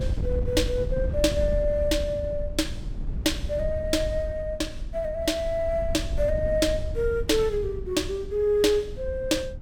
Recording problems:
wind on the microphone; below 88 Hz, SNR 7 dB

